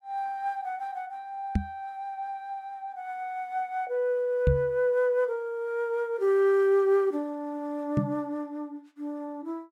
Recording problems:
microphone thump; at 1.5 s, at 4.5 s and at 8 s; peak +8 dB vs average level

